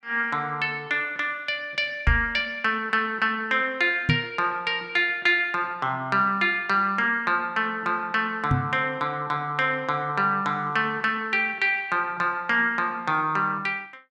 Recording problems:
microphone thump; at 2 s, at 4 s and at 8.5 s; peak +5 dB vs average level

